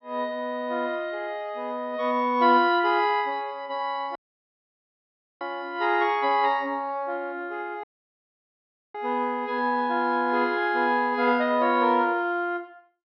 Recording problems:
treble missing; nothing above 5.5 kHz
audio cutting out; at 4 s for 1.5 s and at 8 s for 1 s

